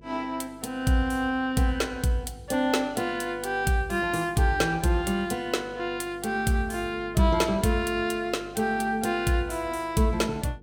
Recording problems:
mains hum; 50 Hz, harmonics up to 500 Hz, SNR 23 dB

